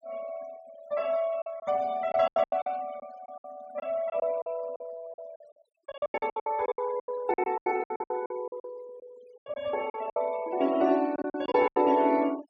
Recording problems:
denoising artefacts; signal-to-artefact ratio 22 dB
lost packets; 16% of the sound replaced, filled with silence

